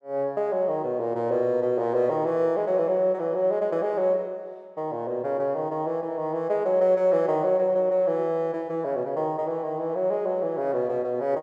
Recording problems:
none

